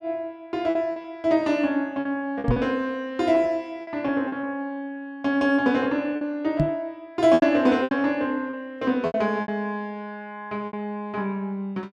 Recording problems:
packet loss; 7% of the sound replaced, filled with repeated pitch periods
microphone bump; at 2.5 s and at 6.5 s; peak +5 dB vs average level

